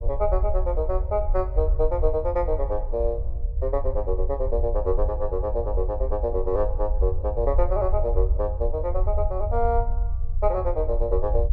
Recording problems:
low-frequency rumble; below 60 Hz, SNR 1 dB

